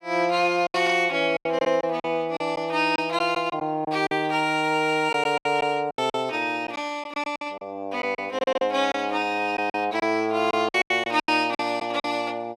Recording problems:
lost packets; 11% of the sound replaced, filled with silence

